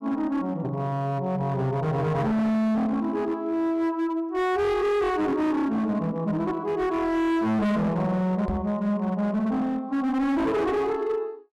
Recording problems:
distortion; hard clipping, signal-to-distortion ratio 7 dB
knock on the microphone; at 8.5 s; peak -1 dB vs average level

